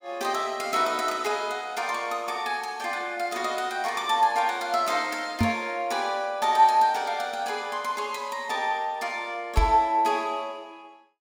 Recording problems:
microphone thump; at 5.5 s and at 9.5 s; peak +6 dB vs average level

